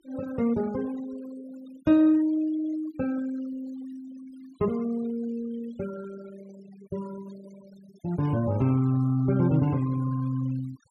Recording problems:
denoising artefacts; signal-to-artefact ratio 22 dB

